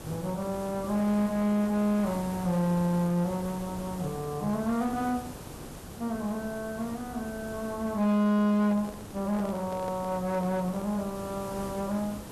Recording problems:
distorted audio; hard clipping, uneven, signal-to-distortion ratio 10 dB
background hiss; SNR 13 dB
handling noise; from 8.5 to 11 s; peak -8 dB vs average level

